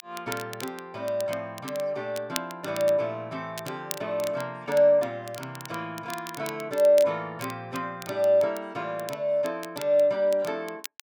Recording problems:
crackle; vinyl, SNR 15 dB

